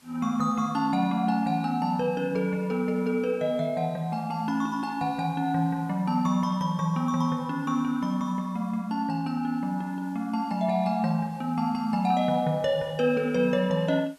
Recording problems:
hiss; slope -2 dB per octave, SNR 30 dB

